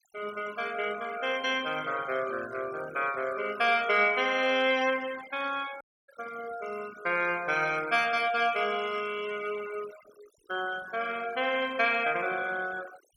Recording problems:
denoising artefacts; signal-to-artefact ratio 17 dB
audio cutting out; at 6 s

